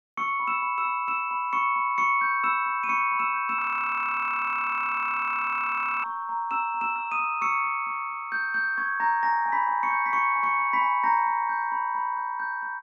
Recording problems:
audio freezing; at 3.5 s for 2.5 s

